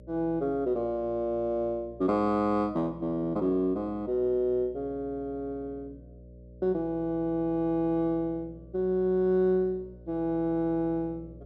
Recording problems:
hum; 60 Hz, harmonics up to 600 Hz, SNR 21 dB

